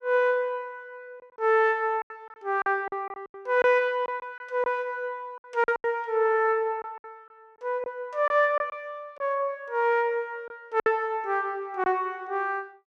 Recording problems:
lost packets; 7% of the sound replaced, filled with silence

